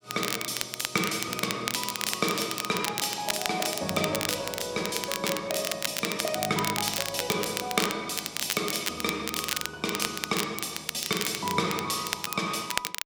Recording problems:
crackle; vinyl, SNR 2 dB

